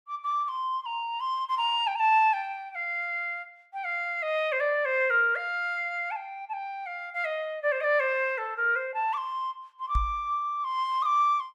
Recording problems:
knock on the microphone; at 10 s; peak +2 dB vs average level

